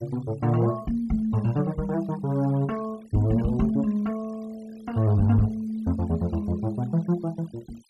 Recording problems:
noise reduction artefacts; signal-to-artefact ratio 25 dB

